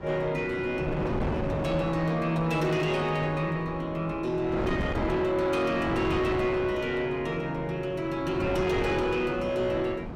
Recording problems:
distortion; soft clipping, signal-to-distortion ratio 11 dB
wind on the microphone; below 610 Hz, SNR 7 dB

